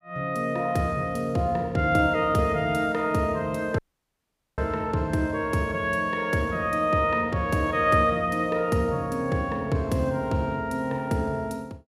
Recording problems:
audio cutting out; at 4 s for 1 s

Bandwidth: 15.5 kHz